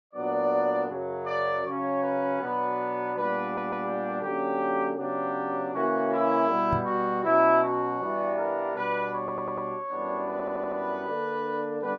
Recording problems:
audio stuttering; at 3.5 s, at 9 s and at 10 s
microphone thump; at 6.5 s; peak +1 dB vs average level

